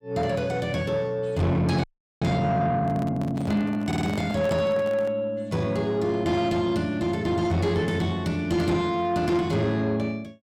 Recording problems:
distortion; soft clipping, signal-to-distortion ratio 11 dB
frozen audio; at 2 s
microphone handling noise; from 3 to 5 s; peak -4 dB vs average level
audio stuttering; at 4 s

